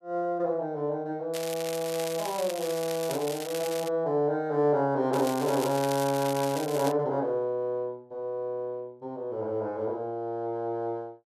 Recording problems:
crackle; from 1.5 to 4 s and from 5 to 7 s; loose cable, SNR 10 dB

